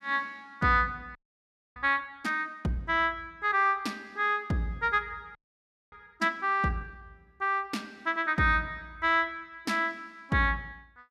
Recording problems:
frozen audio; at 1 s for 0.5 s and at 5.5 s for 0.5 s

